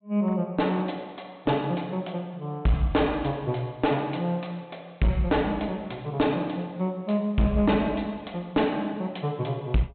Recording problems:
low-pass filter; nothing above 4 kHz
distorted audio; hard clipping, uneven, signal-to-distortion ratio 11 dB

